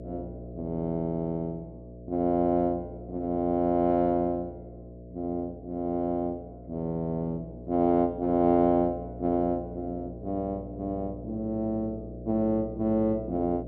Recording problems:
hum; 60 Hz, harmonics up to 660 Hz, SNR 14 dB

